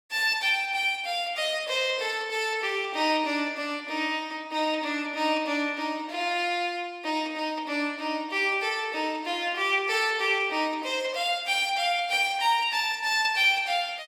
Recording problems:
none

